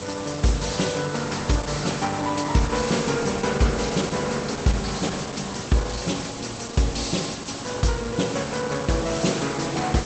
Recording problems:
lossy codec; Opus, log-spectral distance 13 dB, nothing above 8 kHz
background hiss; SNR 9 dB

